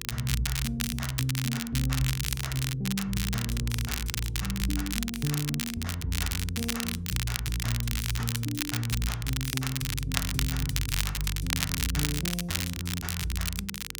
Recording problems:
hum; 50 Hz, harmonics up to 500 Hz, SNR 14 dB
crackle; vinyl, SNR 1 dB

